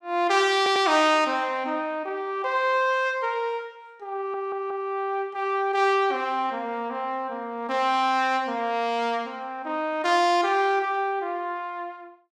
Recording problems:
audio stuttering; at 0.5 s and at 4 s

